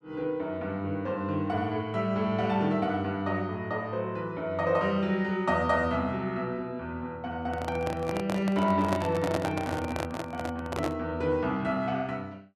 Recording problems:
microphone handling noise; from 7.5 to 11 s; peak +2 dB vs average level

